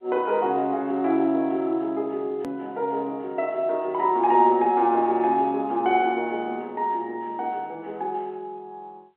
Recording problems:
phone line; 260 Hz to 3.4 kHz, G.711
hard cut with a click; at 2.5 s

